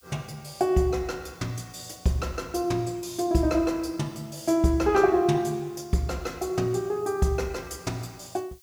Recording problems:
hiss; slope +5 dB per octave, SNR 29 dB

